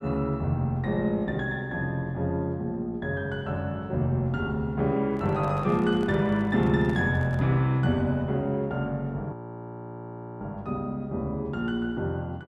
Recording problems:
microphone handling noise; from 5 to 7.5 s; peak -11 dB vs average level
audio freezing; at 9.5 s for 1 s

